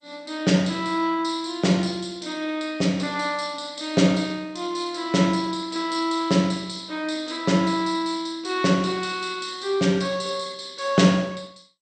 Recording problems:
lossy compression; MP2, log-spectral distance 4 dB, nothing above 8.5 kHz

